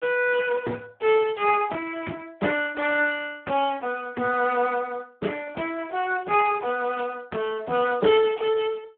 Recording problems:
telephone audio; 260 Hz to 3.3 kHz, Speex

